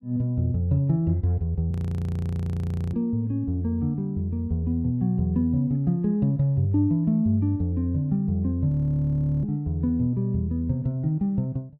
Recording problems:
frozen audio; at 1.5 s for 1 s and at 8.5 s for 0.5 s

